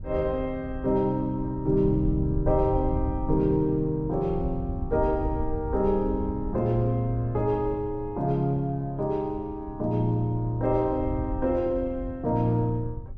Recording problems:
wind on the microphone; below 94 Hz, SNR 9 dB

